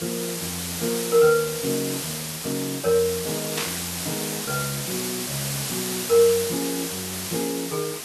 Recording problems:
hiss; slope -1 dB per octave, SNR 3 dB
burst of static; at 3.5 s; peak +1 dB vs average level

